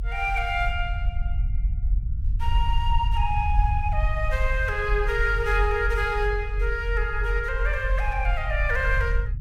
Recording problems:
rumble; below 62 Hz, strongest tone 44 Hz, SNR 1 dB

